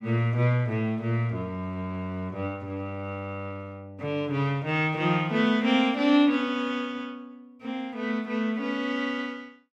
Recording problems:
none

